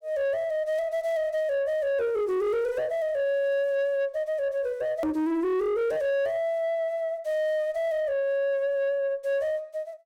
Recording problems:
distortion; soft clipping, signal-to-distortion ratio 11 dB
hard cut with a click; at 5 s

